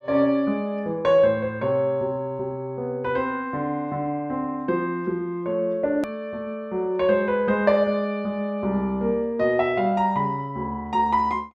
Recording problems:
hard cut with a click; at 6 s

